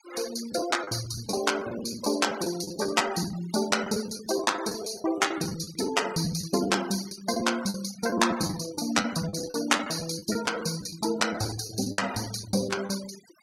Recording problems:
denoising artefacts; signal-to-artefact ratio 14 dB
lost packets; 14% of the sound replaced, filled with the last packet

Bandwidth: 16 kHz